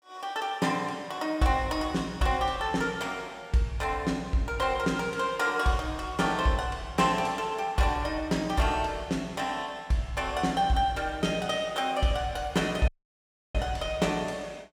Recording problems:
audio cutting out; at 13 s for 0.5 s

